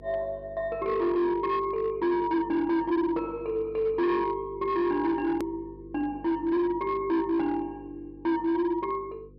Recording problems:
treble cut off; nothing above 5.5 kHz
distortion; hard clipping, signal-to-distortion ratio 11 dB
hum; 50 Hz, harmonics up to 500 Hz, SNR 22 dB
edit click; at 5.5 s

